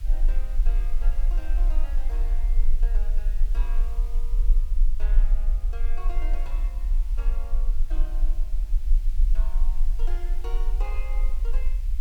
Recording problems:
background hiss; slope 0 dB per octave, SNR 9 dB
rumble; below 36 Hz, strongest tone 24 Hz, SNR -18 dB

